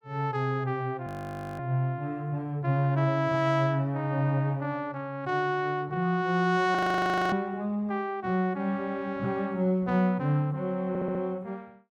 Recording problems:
audio freezing; at 1 s for 0.5 s and at 7 s for 0.5 s
stutter; at 11 s

